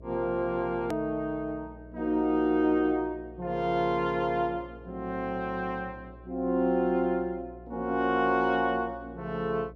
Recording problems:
hum; 60 Hz, harmonics up to 660 Hz, SNR 20 dB
hard cut with a click; at 1 s

